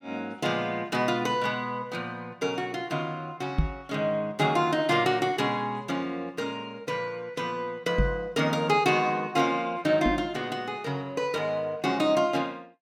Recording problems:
knock on the microphone; at 3.5 s, at 8 s and at 10 s; peak +6 dB vs average level

